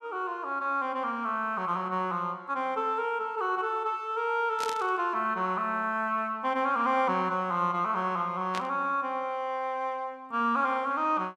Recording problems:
burst of static; at 4.5 s and at 8.5 s; peak -3 dB vs average level

